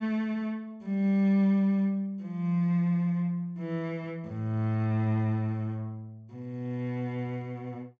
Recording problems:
treble missing; nothing above 8 kHz

